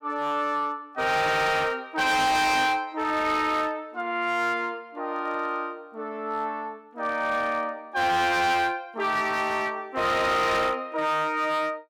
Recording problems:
distortion; hard clipping, signal-to-distortion ratio 7 dB

